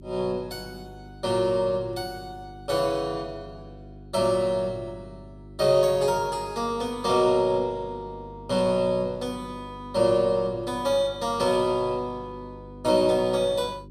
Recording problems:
hum; 50 Hz, harmonics up to 400 Hz, SNR 20 dB

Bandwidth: 14.5 kHz